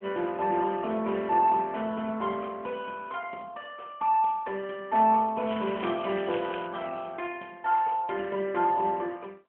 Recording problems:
telephone audio; 170 Hz to 3.4 kHz, AMR-NB
crackle; from 5.5 to 6.5 s; loose cable, SNR 15 dB

